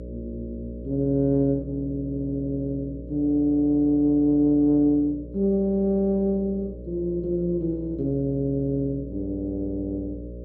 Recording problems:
hum; 60 Hz, harmonics up to 600 Hz, SNR 14 dB

